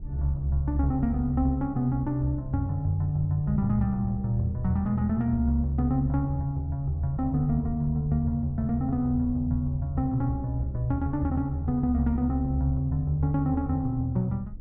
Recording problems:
low-frequency rumble; below 88 Hz, SNR 16 dB

